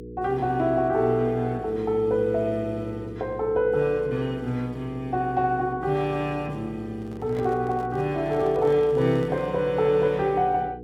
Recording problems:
hum; 60 Hz, harmonics up to 480 Hz, SNR 15 dB
microphone handling noise; from 7 to 9.5 s; peak -12 dB vs average level

